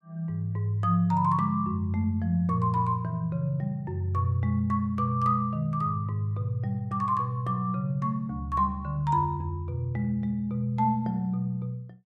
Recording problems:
none

